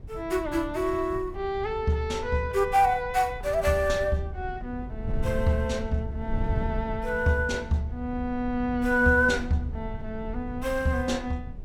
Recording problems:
wind noise; below 110 Hz, SNR 11 dB

